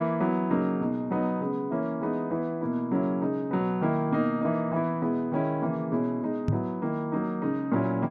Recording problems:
microphone bump; at 6.5 s; peak +4 dB vs average level

